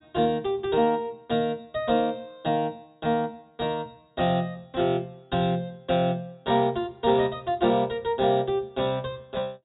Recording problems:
treble missing; nothing above 4 kHz

